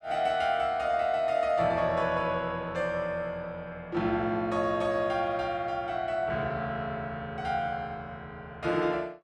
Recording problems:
none

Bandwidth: 12.5 kHz